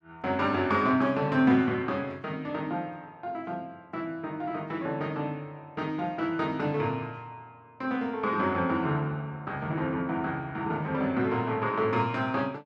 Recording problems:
none

